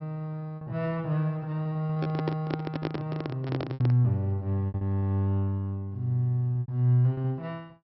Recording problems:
treble missing; nothing above 5.6 kHz
lost packets; 8% of the sound replaced, filled with repeated pitch periods
microphone handling noise; from 2 to 4 s; peak +1 dB vs average level

